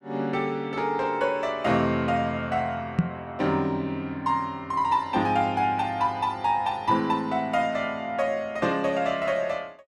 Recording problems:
knock on the microphone; at 3 s; peak +8 dB vs average level

